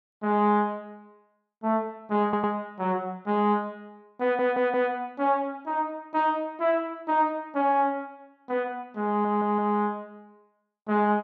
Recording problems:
audio stuttering; at 2 s, at 4 s and at 9 s

